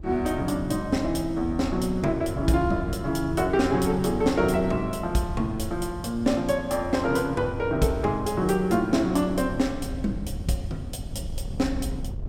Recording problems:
wind noise; below 130 Hz, SNR 11 dB

